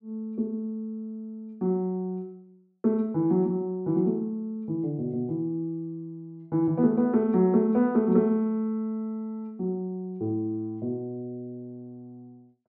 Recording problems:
none

